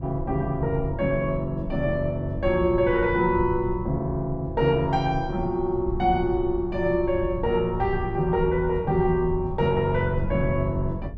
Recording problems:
rumble; below 110 Hz, SNR 11 dB

